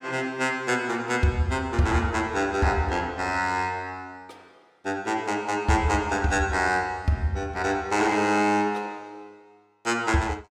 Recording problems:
none

